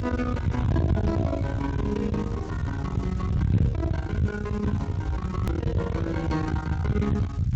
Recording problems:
codec artefacts; Speex, log-spectral distance 2 dB
distortion; soft clipping, signal-to-distortion ratio 8 dB
background hiss; slope +2 dB per octave, SNR 26 dB
rumble; below 170 Hz, SNR -1 dB
click at an edit; at 5.5 s

